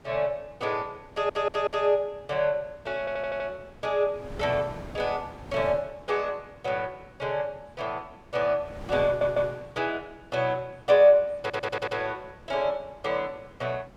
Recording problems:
wind on the microphone; below 650 Hz, SNR 19 dB
stutter; 4 times, first at 1 s

